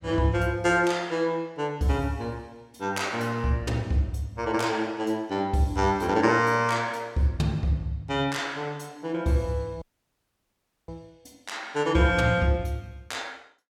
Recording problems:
dropout; at 10 s for 1 s

